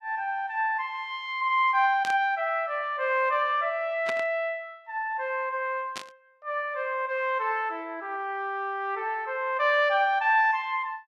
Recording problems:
burst of static; at 2 s, at 4 s and at 6 s; peak -3 dB vs average level

